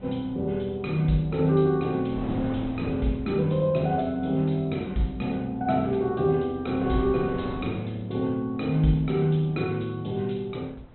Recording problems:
low-pass filter; nothing above 3.9 kHz
wind on the microphone; below 530 Hz, SNR 17 dB

